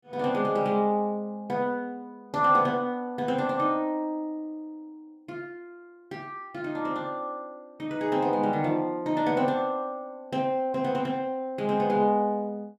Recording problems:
none

